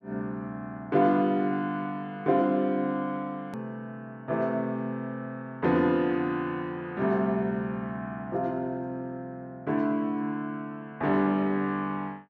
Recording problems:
click at an edit; at 3.5 s

